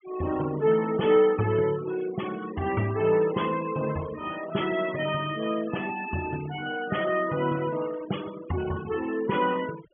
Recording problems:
treble missing; nothing above 3.4 kHz
noise reduction artefacts; signal-to-artefact ratio 16 dB

